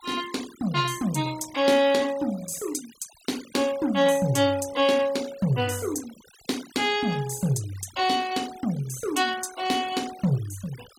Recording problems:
denoising artefacts; signal-to-artefact ratio 18 dB

